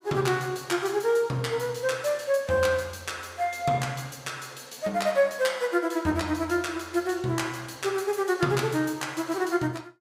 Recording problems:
none

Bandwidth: 15.5 kHz